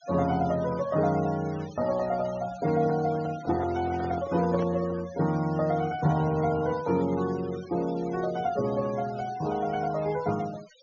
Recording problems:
treble cut off; nothing above 6.9 kHz
denoising artefacts; signal-to-artefact ratio 19 dB
microphone handling noise; from 2.5 to 5 s; peak -5 dB vs average level

